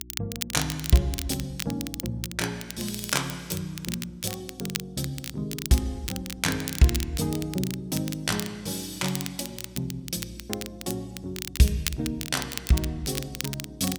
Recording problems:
hum; 60 Hz, harmonics up to 360 Hz, SNR 21 dB
crackle; vinyl, SNR 7 dB

